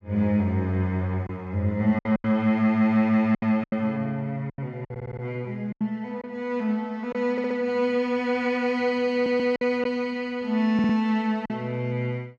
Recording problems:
packet loss; 6% of the sound replaced, filled with silence
stutter; 4 times, first at 5 s

